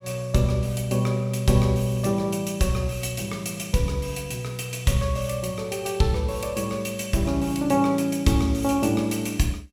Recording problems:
none

